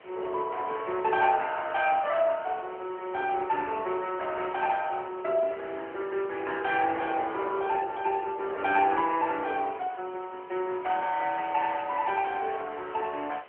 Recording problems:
telephone audio; 340 Hz to 3.2 kHz, AMR-NB
background hiss; SNR 25 dB
wind on the microphone; below 880 Hz, SNR 16 dB

